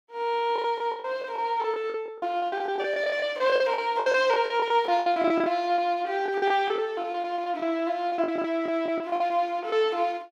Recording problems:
lost packets; 15% of the sound replaced, filled with the last packet

